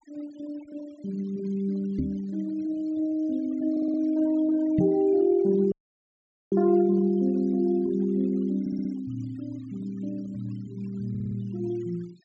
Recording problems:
treble missing; nothing above 8 kHz
noise reduction artefacts; signal-to-artefact ratio 28 dB
microphone thump; at 2 s and at 5 s; peak +4 dB vs average level
audio stuttering; at 3.5 s, at 8.5 s and at 11 s
dropout; at 5.5 s for 1 s

